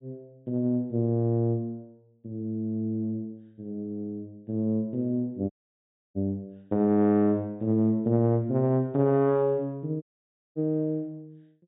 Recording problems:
treble cut off; nothing above 4 kHz
audio cutting out; at 5.5 s for 0.5 s and at 10 s for 0.5 s

